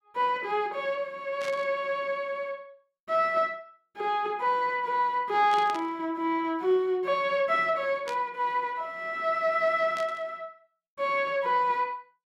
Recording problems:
burst of static; 4 times, first at 1.5 s; peak -8 dB vs average level

